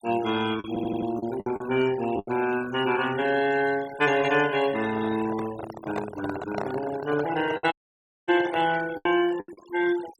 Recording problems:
denoising artefacts; signal-to-artefact ratio 15 dB
packet loss; 6% of the sound replaced, filled with the last packet
stutter; at 0.5 s
microphone handling noise; from 5 to 9 s; peak -2 dB vs average level
dropout; at 7.5 s for 0.5 s

